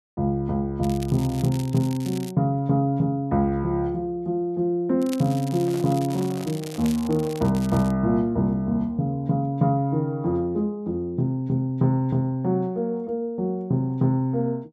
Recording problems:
crackling; from 1 to 2.5 s and from 5 to 8 s; loose cable, SNR 18 dB
microphone handling noise; from 5.5 to 7.5 s; peak -11 dB vs average level

